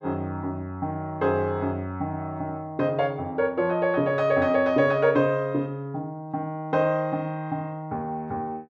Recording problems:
none

